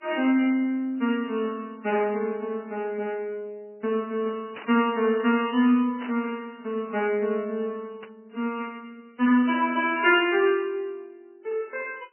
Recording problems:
lossy compression; MP3, log-spectral distance 3 dB, nothing above 2.4 kHz
static burst; 4 times, first at 4.5 s; peak -10 dB vs average level

